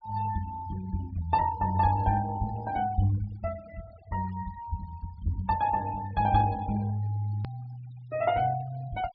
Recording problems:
treble missing; nothing above 5.5 kHz
noise reduction artefacts; signal-to-artefact ratio 20 dB
click at an edit; at 7.5 s

